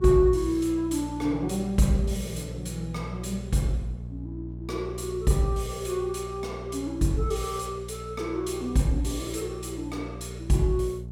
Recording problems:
electrical hum; 60 Hz, harmonics up to 420 Hz, SNR 11 dB

